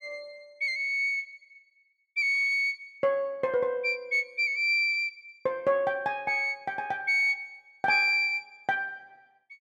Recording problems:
none

